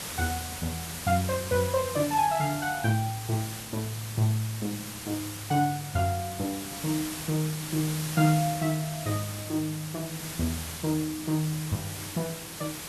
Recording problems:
hiss; slope -1 dB per octave, SNR 7 dB

